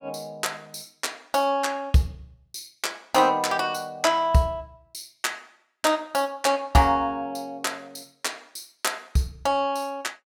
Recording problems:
none

